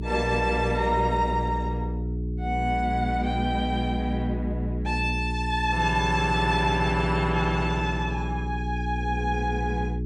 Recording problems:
electrical hum; 60 Hz, harmonics up to 420 Hz, SNR 4 dB

